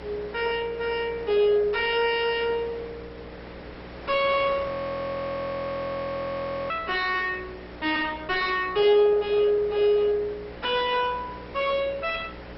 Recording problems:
codec artefacts; MP2, log-spectral distance 3 dB, nothing above 5.5 kHz
distorted audio; soft clipping, signal-to-distortion ratio 5 dB
mains hum; 60 Hz, harmonics up to 600 Hz, SNR 20 dB
wind noise; below 2.1 kHz, SNR 17 dB
audio freezing; at 4.5 s for 2 s

